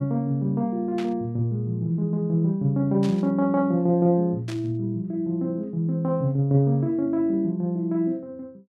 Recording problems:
static burst; at 1 s, at 3 s and at 4.5 s; peak -10 dB vs average level

